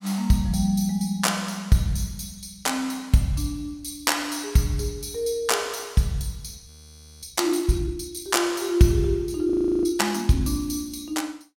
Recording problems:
audio freezing; at 6.5 s for 0.5 s and at 9.5 s

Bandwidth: 16.5 kHz